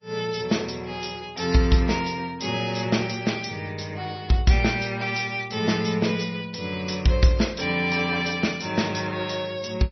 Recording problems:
codec artefacts; MP3, log-spectral distance 7 dB, nothing above 5.8 kHz

